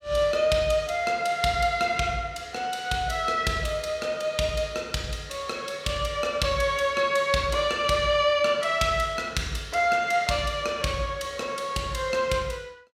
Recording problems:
none

